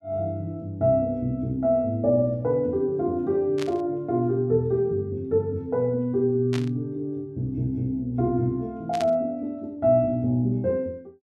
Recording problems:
static burst; at 3.5 s, at 6.5 s and at 9 s; peak -6 dB vs average level

